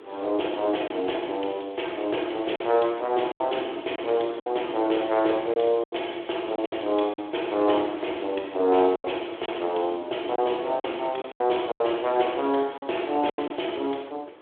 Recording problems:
phone line; 280 Hz to 3.5 kHz, Speex
hiss; SNR 22 dB
wind on the microphone; below 430 Hz, SNR 18 dB
packet loss; 6% of the sound replaced, filled with silence

